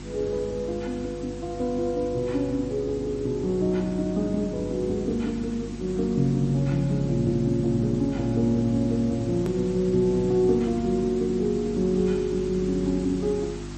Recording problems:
codec artefacts; MP3, log-spectral distance 5 dB, nothing above 13.7 kHz
hum; 50 Hz, harmonics up to 350 Hz, SNR 12 dB
background hiss; SNR 21 dB
hard cut with a click; at 9.5 s

